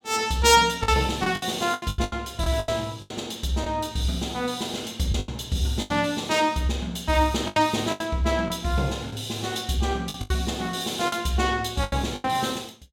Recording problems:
lost packets; 10% of the sound replaced, filled with the last packet

